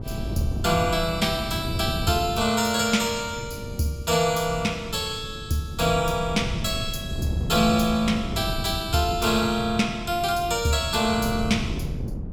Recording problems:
wind noise; below 190 Hz, SNR 9 dB

